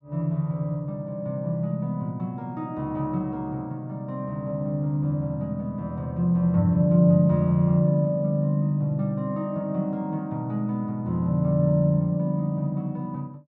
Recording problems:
none

